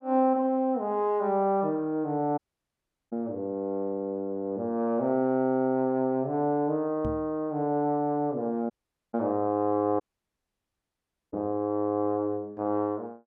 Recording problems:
audio cutting out; at 2.5 s for 0.5 s, at 8.5 s and at 10 s for 1.5 s
microphone bump; at 7 s; peak -3 dB vs average level

